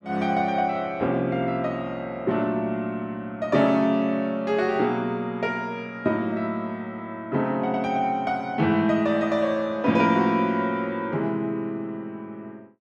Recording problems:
none

